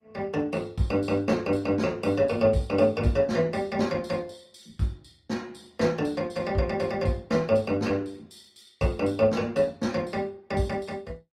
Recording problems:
lossy compression; Opus, log-spectral distance 3 dB, nothing above 16.6 kHz

